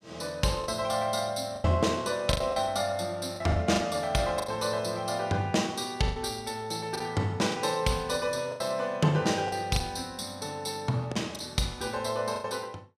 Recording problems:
lost packets; 7% of the sound replaced, filled with the last packet

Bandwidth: 15 kHz